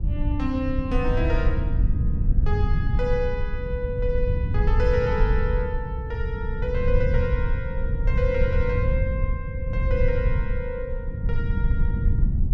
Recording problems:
low-frequency rumble; below 92 Hz, SNR -4 dB

